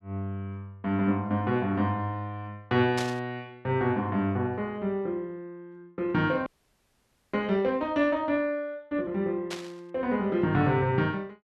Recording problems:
static burst; at 3 s and at 9.5 s; peak -2 dB vs average level
audio freezing; at 6.5 s for 1 s

